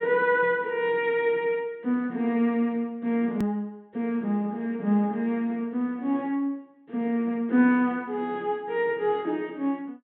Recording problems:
low-pass filter; nothing above 4 kHz
hard cut with a click; at 3.5 s

